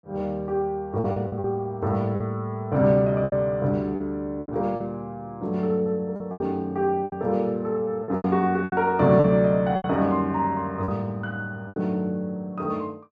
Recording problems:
packet loss; 8% of the sound replaced, filled with repeated pitch periods

